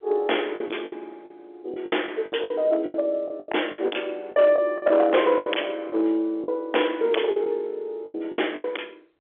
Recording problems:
phone line; 260 Hz to 3.5 kHz, G.711
distorted audio; hard clipping, uneven, signal-to-distortion ratio 8 dB
packet loss; 14% of the sound replaced, filled with the last packet

